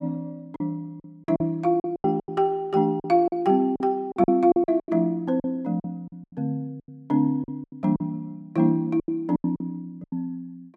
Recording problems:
lost packets; 14% of the sound replaced, filled with silence

